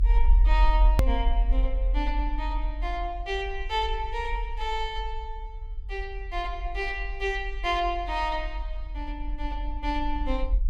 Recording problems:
low-frequency rumble; below 46 Hz, strongest tone 42 Hz, SNR -1 dB
edit click; at 1 s

